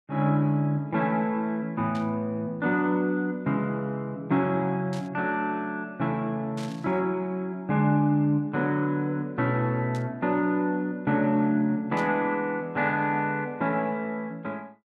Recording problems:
static burst; 5 times, first at 2 s; peak -12 dB vs average level

